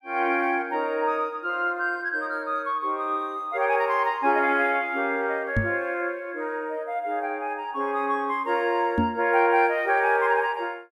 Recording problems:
knock on the microphone; at 5.5 s and at 9 s; peak +4 dB vs average level

